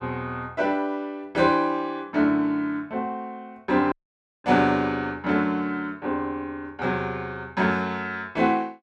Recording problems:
dropout; at 4 s for 0.5 s

